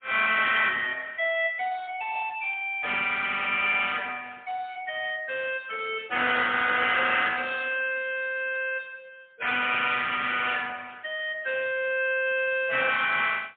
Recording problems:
phone line; 300 Hz to 3.4 kHz, AMR-NB, then MP3

